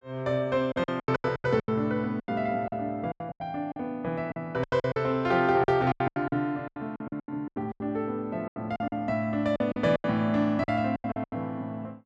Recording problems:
lost packets; 18% of the sound replaced, filled with silence

